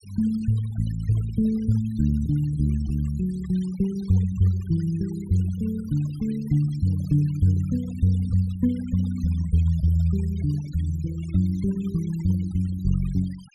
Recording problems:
noise reduction artefacts; signal-to-artefact ratio 24 dB

